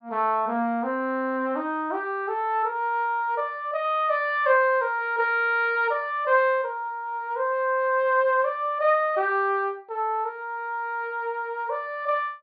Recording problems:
treble cut off; nothing above 4.8 kHz

